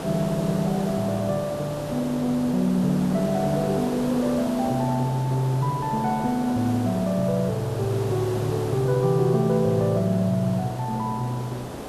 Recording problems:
background hiss; SNR 9 dB

